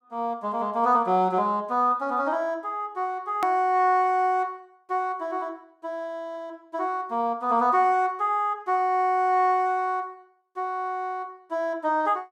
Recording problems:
edit click; at 3.5 s

